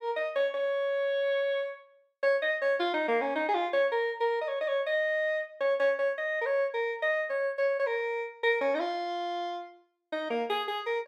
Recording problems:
none

